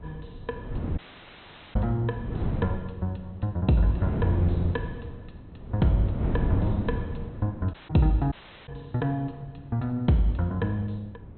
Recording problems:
treble cut off; nothing above 4.1 kHz
wind noise; below 200 Hz, SNR 4 dB
dropout; at 1 s for 1 s, at 7.5 s and at 8.5 s

